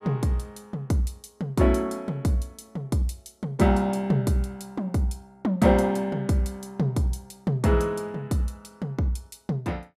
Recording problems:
none

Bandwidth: 15 kHz